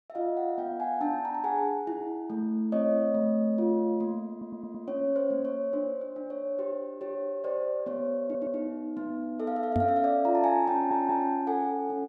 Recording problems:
audio stuttering; at 4.5 s, at 8 s and at 11 s
knock on the microphone; at 10 s; peak +3 dB vs average level

